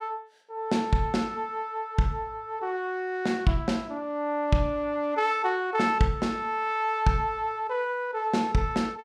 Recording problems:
none

